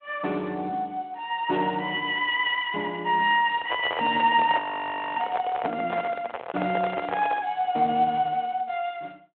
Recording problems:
phone line; 280 Hz to 3.5 kHz, Speex
handling noise; from 3.5 to 7.5 s; peak 0 dB vs average level
frozen audio; at 4.5 s for 0.5 s

